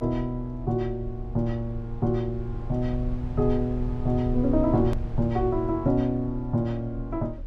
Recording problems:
rumble; below 68 Hz, SNR 9 dB
hard cut with a click; at 5 s

